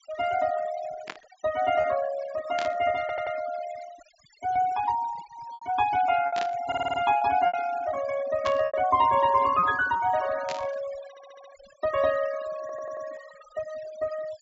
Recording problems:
low-pass filter; nothing above 8 kHz
noise reduction artefacts; signal-to-artefact ratio 15 dB
packet loss; 4% of the sound replaced, filled with repeated pitch periods
burst of static; 5 times, first at 1 s; peak -3 dB vs average level
audio stuttering; 4 times, first at 3 s

